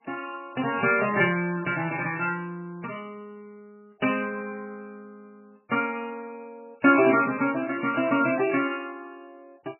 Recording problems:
lossy compression; MP3, log-spectral distance 4 dB, nothing above 2.4 kHz

